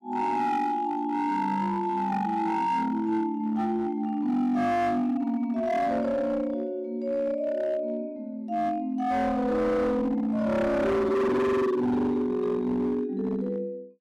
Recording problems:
distortion; hard clipping, signal-to-distortion ratio 8 dB

